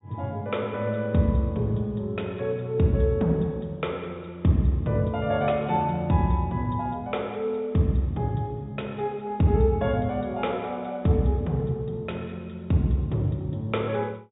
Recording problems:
low-pass filter; nothing above 4 kHz

